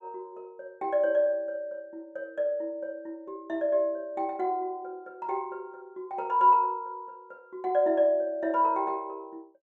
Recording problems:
none

